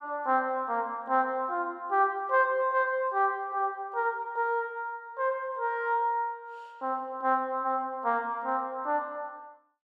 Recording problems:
none

